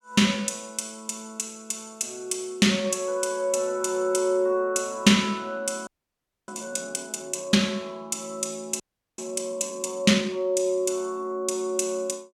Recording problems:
frozen audio; at 6 s for 0.5 s and at 9 s

